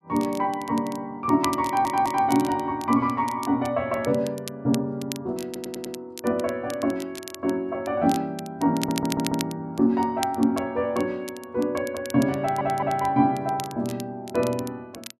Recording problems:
crackling; vinyl, SNR 15 dB
stutter; 4 times, first at 1.5 s

